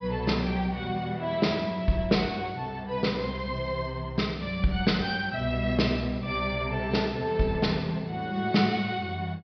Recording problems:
low-pass filter; nothing above 5.5 kHz

